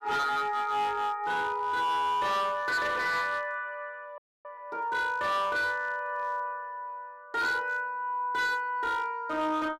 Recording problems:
distortion; hard clipping, signal-to-distortion ratio 11 dB
frozen audio; at 4 s

